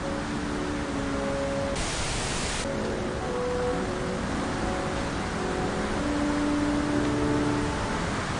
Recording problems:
lossy codec; MP3, log-spectral distance 7 dB
hum; 60 Hz, harmonics up to 360 Hz, SNR 17 dB
background hiss; SNR 1 dB
audio freezing; at 2 s for 1 s
static burst; at 3 s, at 5 s and at 7 s; peak -6 dB vs average level

